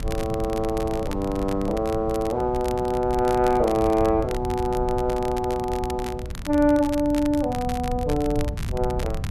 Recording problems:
electrical hum; 60 Hz, harmonics up to 960 Hz, SNR 19 dB
rumble; below 110 Hz, SNR 11 dB
wind on the microphone; below 140 Hz, SNR 14 dB
crackling; vinyl, SNR 17 dB

